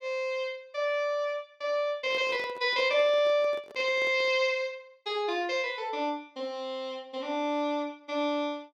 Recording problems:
microphone handling noise; from 2 to 4.5 s; peak -11 dB vs average level

